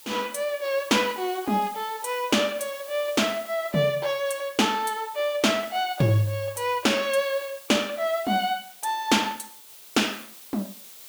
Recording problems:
background hiss; slope +1 dB per octave, SNR 18 dB

